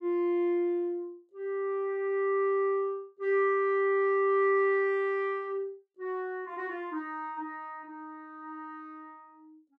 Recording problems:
none

